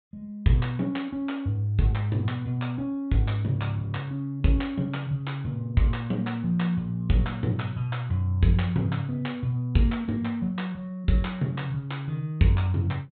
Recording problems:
treble missing; nothing above 4 kHz

